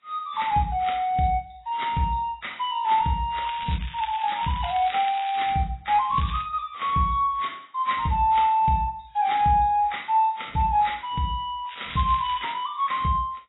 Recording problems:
lossy codec; AAC, then AAC, log-spectral distance 5 dB, nothing above 3.8 kHz
crackle; from 3.5 to 5.5 s, at 6 s and at 12 s; loose cable, SNR 16 dB

